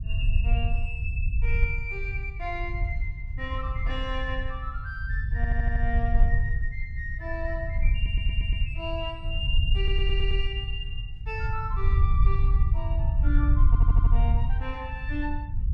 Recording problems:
rumble; below 70 Hz, SNR -7 dB
audio stuttering; 4 times, first at 5.5 s

